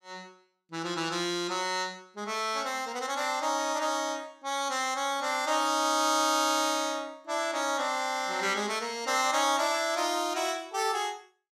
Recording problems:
none

